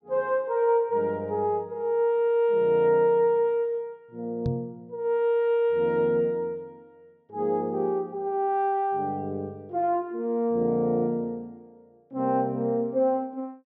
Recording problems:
microphone bump; at 4.5 s; peak 0 dB vs average level

